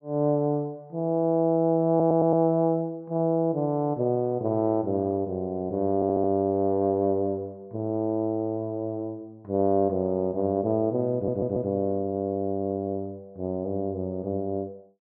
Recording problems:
audio stuttering; at 2 s, at 6 s and at 11 s

